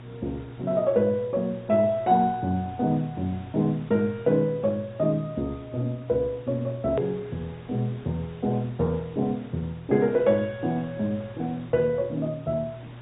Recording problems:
treble cut off; nothing above 3.5 kHz
lossy codec; MP2, log-spectral distance 7 dB
electrical hum; 60 Hz, harmonics up to 720 Hz, SNR 18 dB
hiss; SNR 23 dB
edit click; at 7 s

